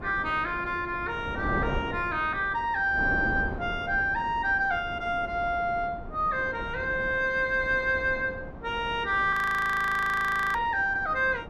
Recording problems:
wind noise; below 500 Hz, SNR 12 dB
frozen audio; at 9.5 s for 1 s

